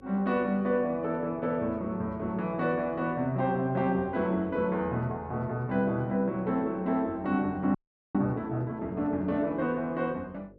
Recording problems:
electrical hum; 50 Hz, harmonics up to 550 Hz, SNR 26 dB
frozen audio; at 8 s

